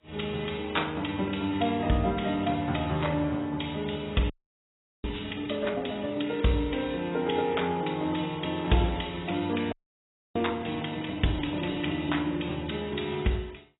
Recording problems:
lossy codec; AAC, log-spectral distance 6 dB, nothing above 3.8 kHz
audio freezing; at 4.5 s for 0.5 s and at 9.5 s for 0.5 s

